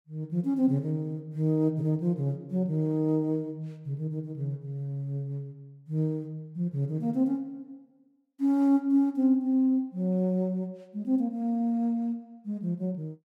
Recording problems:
none

